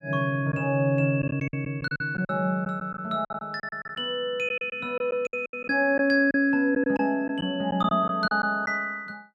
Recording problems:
lost packets; 10% of the sound replaced, filled with silence

